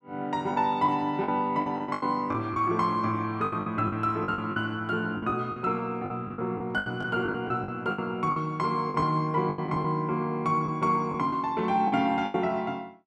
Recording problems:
lost packets; 11% of the sound replaced, filled with the last packet

